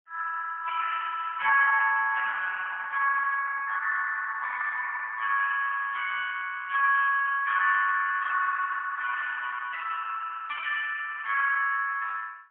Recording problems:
telephone audio; 990 Hz to 2.2 kHz, AMR-NB, then MP3

